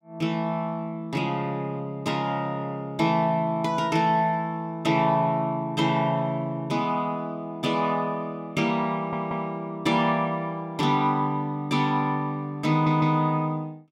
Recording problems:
audio stuttering; at 9 s and at 13 s

